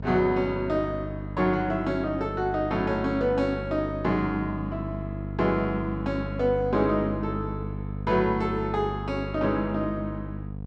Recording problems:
electrical hum; 50 Hz, harmonics up to 750 Hz, SNR 8 dB

